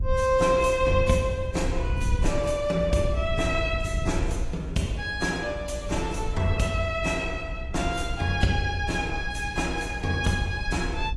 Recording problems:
lossy codec; AAC, log-spectral distance 3 dB, nothing above 11.3 kHz
hum; 60 Hz, harmonics up to 540 Hz, SNR 17 dB
wind on the microphone; below 82 Hz, SNR 7 dB

